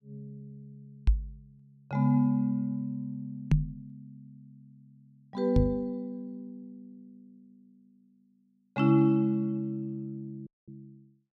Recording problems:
microphone thump; at 1 s, at 3.5 s and at 5.5 s; peak +9 dB vs average level
audio cutting out; at 10 s

